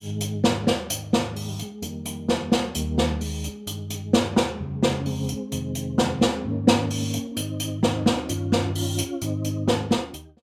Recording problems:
none

